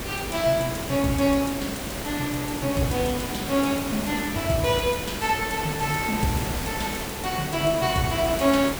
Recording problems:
hum; 50 Hz, harmonics up to 600 Hz, SNR 19 dB
background hiss; slope -4 dB per octave, SNR 5 dB

